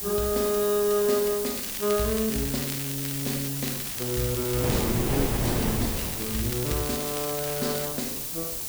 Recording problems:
background hiss; SNR 2 dB
wind on the microphone; below 570 Hz, SNR 2 dB
crackle; from 1.5 to 3.5 s, from 3.5 to 5 s and from 6 to 8 s; loose cable, SNR 9 dB

